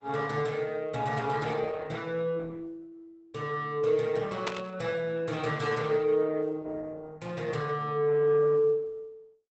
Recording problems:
lossy codec; Opus, log-spectral distance 3 dB, nothing above 8 kHz
static burst; at 4.5 s; peak 0 dB vs average level

